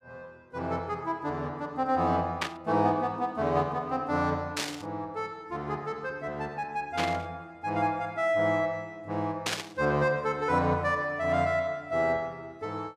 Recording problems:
static burst; 4 times, first at 2.5 s; peak +4 dB vs average level

